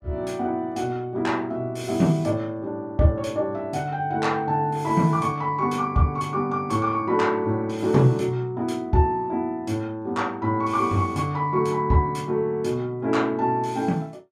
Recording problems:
none

